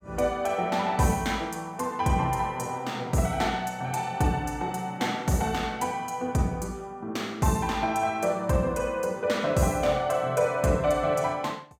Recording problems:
none

